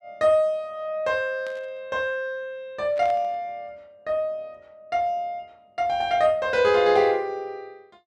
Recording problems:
static burst; at 1.5 s and at 3 s; peak -14 dB vs average level

